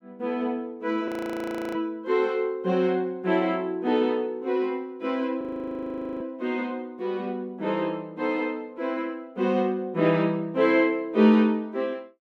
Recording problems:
audio freezing; at 1 s for 0.5 s and at 5.5 s for 1 s

